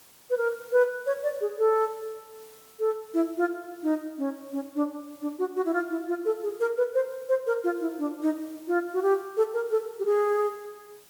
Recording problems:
hiss; slope -1 dB per octave, SNR 25 dB

